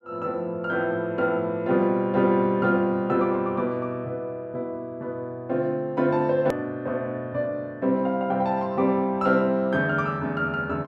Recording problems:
hard cut with a click; at 6.5 s

